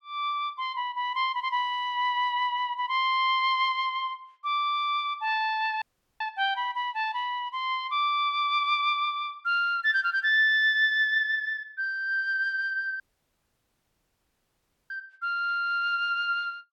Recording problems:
dropout; at 6 s and at 13 s for 2 s

